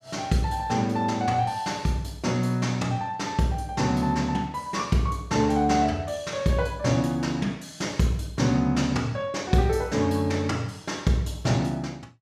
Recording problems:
none

